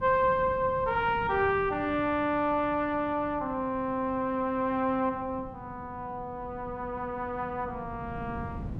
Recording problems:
wind on the microphone; below 220 Hz, SNR 15 dB

